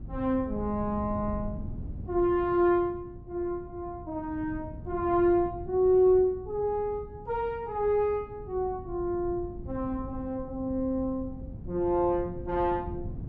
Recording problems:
wind noise; below 160 Hz, SNR 13 dB

